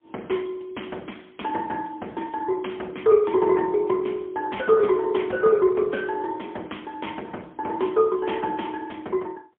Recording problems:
phone line; 260 Hz to 3.3 kHz, AMR-NB, then MP3

